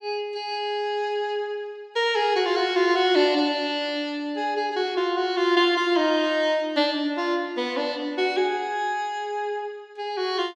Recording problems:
none

